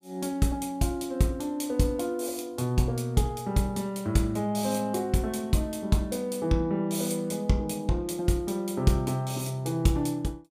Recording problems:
none

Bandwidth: 15.5 kHz